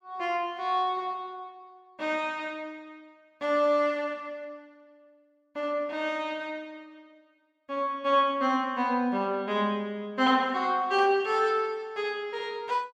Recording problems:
none

